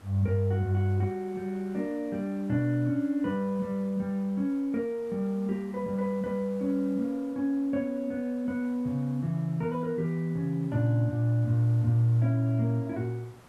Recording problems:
hiss; SNR 26 dB

